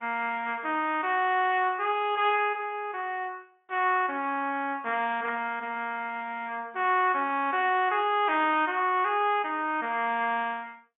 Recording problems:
treble cut off; nothing above 3.4 kHz
lossy codec; MP2, then AAC, log-spectral distance 3 dB

